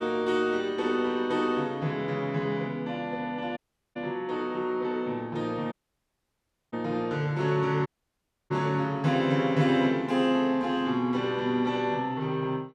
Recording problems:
audio cutting out; at 3.5 s, at 5.5 s for 1 s and at 8 s for 0.5 s

